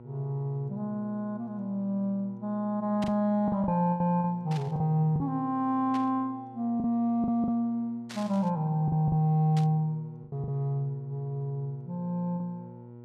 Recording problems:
hum; 60 Hz, harmonics up to 960 Hz, SNR 19 dB
packet loss; 5% of the sound replaced, filled with the last packet
static burst; 5 times, first at 3 s; peak -8 dB vs average level

